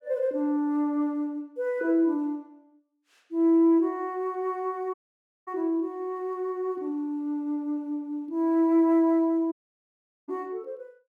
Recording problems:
audio cutting out; at 5 s for 0.5 s and at 9.5 s for 1 s

